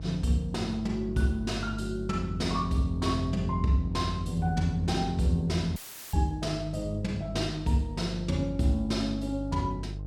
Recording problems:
hum; 50 Hz, harmonics up to 500 Hz, SNR 9 dB
audio cutting out; at 6 s; filled with static

